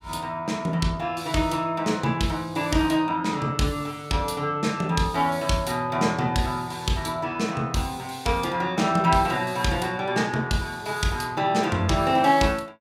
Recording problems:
none

